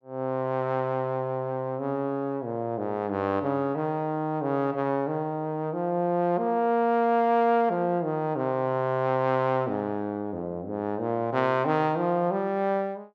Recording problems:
none

